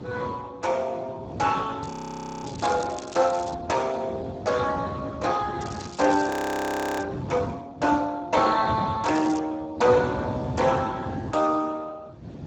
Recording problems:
codec artefacts; Speex, log-spectral distance 5 dB, nothing above 19.5 kHz
wind noise; below 330 Hz, SNR 11 dB
crackle; from 2 to 3.5 s, from 5.5 to 7 s and at 9 s; loose cable, SNR 17 dB
frozen audio; at 2 s for 0.5 s and at 6.5 s for 0.5 s

